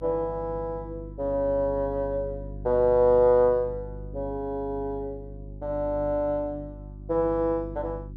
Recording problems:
hum; 50 Hz, harmonics up to 350 Hz, SNR 14 dB

